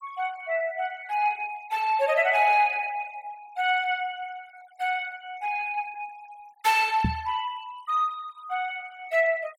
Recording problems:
denoising artefacts; signal-to-artefact ratio 24 dB
microphone thump; at 7 s; peak +4 dB vs average level

